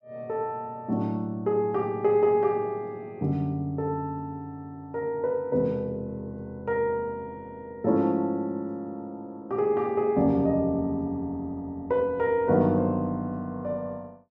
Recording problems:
none

